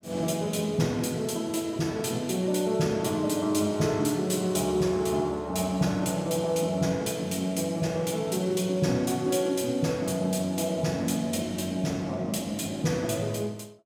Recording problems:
none

